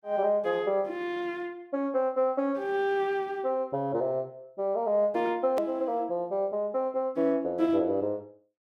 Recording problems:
hard cut with a click; at 5.5 s

